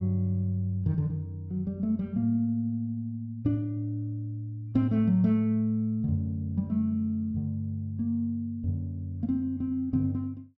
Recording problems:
none

